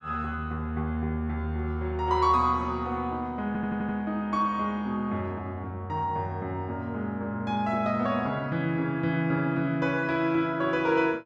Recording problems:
stutter; at 3.5 s

